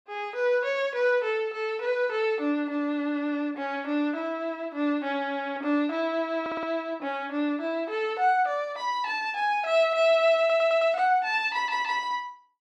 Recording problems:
audio stuttering; at 6.5 s, at 10 s and at 12 s

